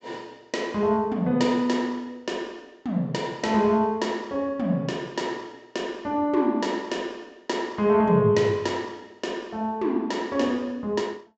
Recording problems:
low-pass filter; nothing above 8 kHz

